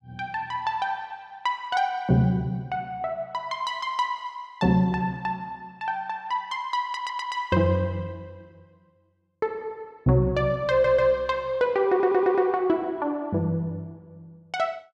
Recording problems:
stutter; at 7 s, at 11 s and at 12 s

